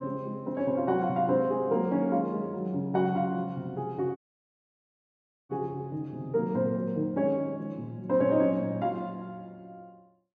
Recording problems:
audio cutting out; at 4 s for 1.5 s

